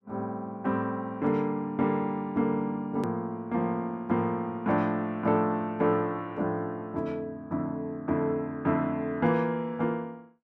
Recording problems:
edit click; at 3 s

